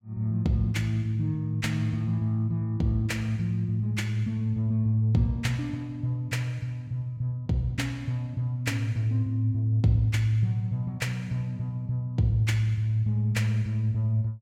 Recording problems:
none

